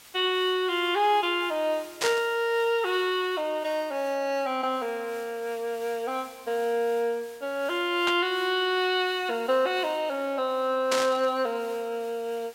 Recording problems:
background hiss; slope 0 dB per octave, SNR 22 dB
static burst; at 2 s, at 8 s and at 11 s; peak +3 dB vs average level

